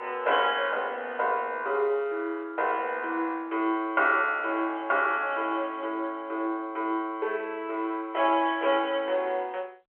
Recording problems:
telephone audio; 340 Hz to 3.3 kHz, G.711

